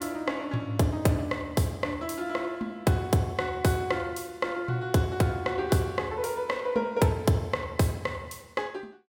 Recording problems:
none

